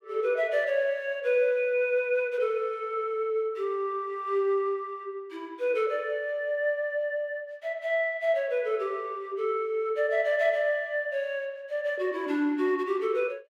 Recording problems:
none

